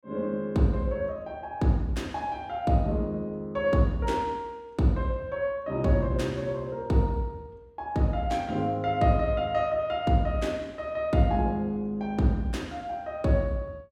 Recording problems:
none

